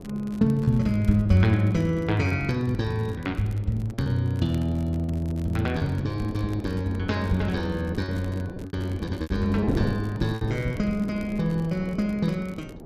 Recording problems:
wind on the microphone; below 400 Hz, SNR 12 dB
crackle; vinyl, SNR 27 dB
packet loss; 6% of the sound replaced, filled with repeated pitch periods

